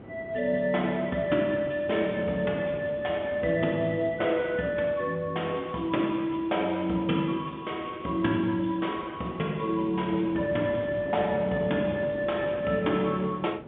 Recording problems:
telephone audio; 190 Hz to 3.6 kHz, G.711
wind noise; below 520 Hz, SNR 15 dB

